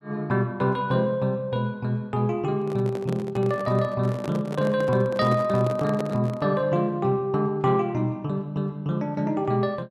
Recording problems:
handling noise; from 2.5 to 6.5 s; peak -3 dB vs average level

